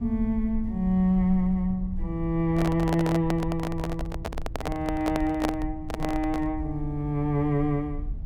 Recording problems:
low-frequency rumble; below 72 Hz, SNR 10 dB
handling noise; from 2.5 to 6.5 s; peak +2 dB vs average level

